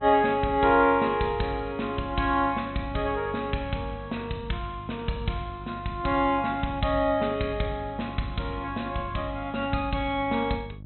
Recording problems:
treble missing; nothing above 4.1 kHz
hum; 50 Hz, harmonics up to 600 Hz, SNR 16 dB

